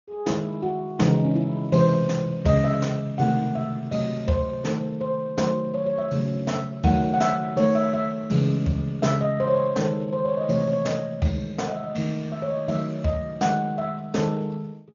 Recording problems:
low-pass filter; nothing above 6.9 kHz
codec artefacts; Speex, log-spectral distance 3 dB

